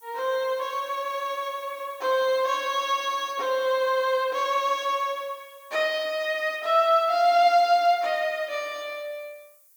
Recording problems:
background hiss; SNR 27 dB

